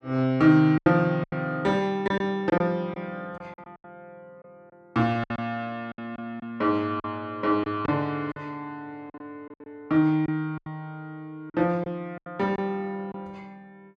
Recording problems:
lost packets; 9% of the sound replaced, filled with silence

